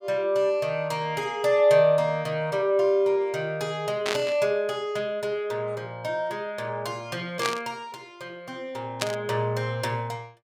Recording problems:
burst of static; at 4 s, at 7.5 s and at 9 s; peak +3 dB vs average level

